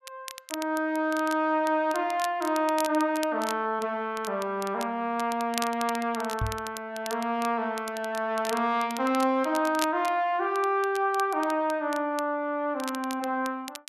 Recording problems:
crackling; vinyl, SNR 14 dB
microphone thump; at 6.5 s; peak 0 dB vs average level

